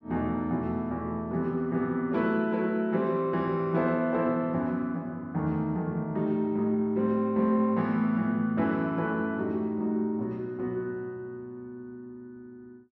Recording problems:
none

